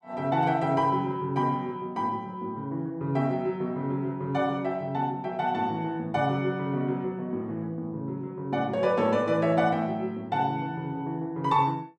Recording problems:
none

